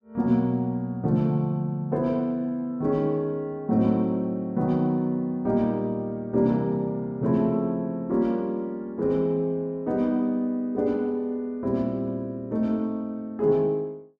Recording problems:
none

